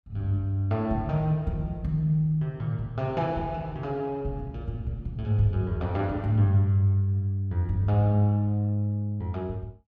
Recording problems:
none

